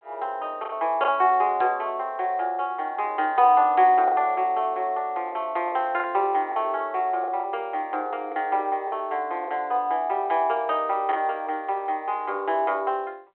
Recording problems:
phone line; 340 Hz to 3.3 kHz, G.726
packet loss; 4% of the sound replaced, filled with the last packet

